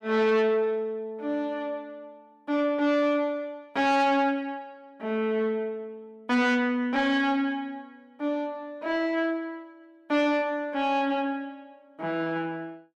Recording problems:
distorted audio; soft clipping, signal-to-distortion ratio 11 dB

